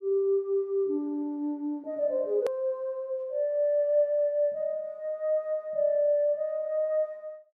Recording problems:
click at an edit; at 2.5 s

